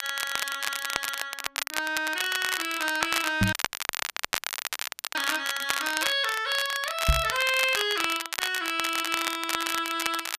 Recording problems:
crackling; vinyl, SNR 3 dB
knock on the microphone; at 3.5 s and at 7 s; peak +7 dB vs average level
dropout; at 3.5 s for 1.5 s

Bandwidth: 14.5 kHz